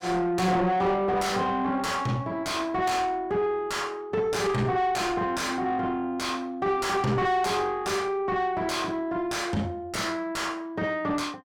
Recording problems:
distorted audio; soft clipping, signal-to-distortion ratio 6 dB

